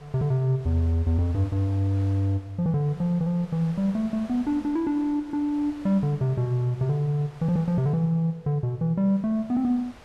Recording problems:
wind on the microphone; below 1.8 kHz, SNR 24 dB

